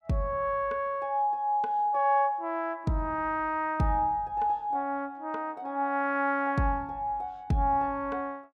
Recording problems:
none

